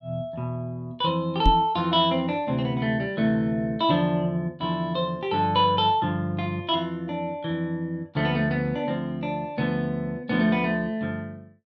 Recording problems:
microphone bump; at 1.5 s; peak +6 dB vs average level

